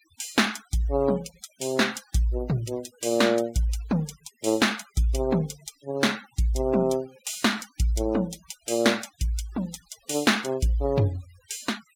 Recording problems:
denoising artefacts; signal-to-artefact ratio 22 dB

